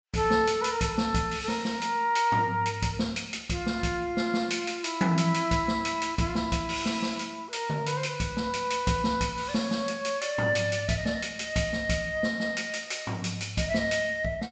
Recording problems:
treble missing; nothing above 8 kHz

